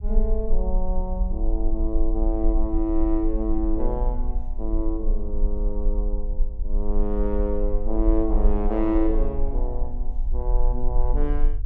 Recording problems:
low-frequency rumble; below 40 Hz, strongest tone 22 Hz, SNR -1 dB

